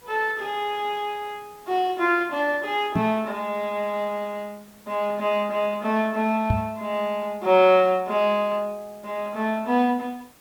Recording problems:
hiss; slope -3 dB per octave, SNR 27 dB
microphone bump; at 3 s and at 6.5 s; peak +5 dB vs average level

